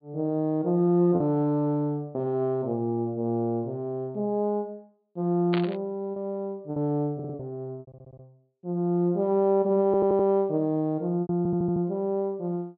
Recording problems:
treble missing; nothing above 4.7 kHz
packet loss; 3% of the sound replaced, filled with repeated pitch periods
static burst; at 5.5 s; peak -2 dB vs average level
stutter; 4 times, first at 7 s

